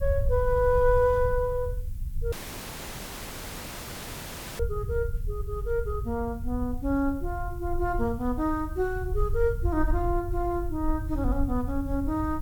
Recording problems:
hiss; SNR 27 dB
rumble; below 76 Hz, SNR 5 dB
dropout; at 2.5 s for 2.5 s

